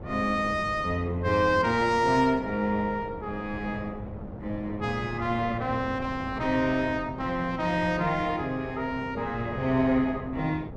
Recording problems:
wind noise; below 440 Hz, SNR 13 dB

